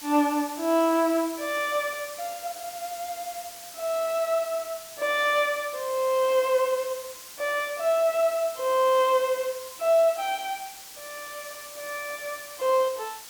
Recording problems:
hiss; slope +1 dB per octave, SNR 14 dB

